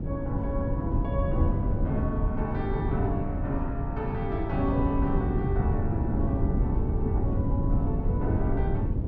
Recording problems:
electrical hum; 50 Hz, harmonics up to 400 Hz, SNR 11 dB
wind on the microphone; below 150 Hz, SNR -4 dB

